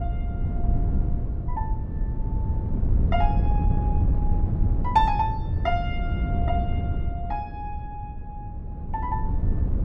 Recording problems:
wind noise; below 110 Hz, SNR -3 dB

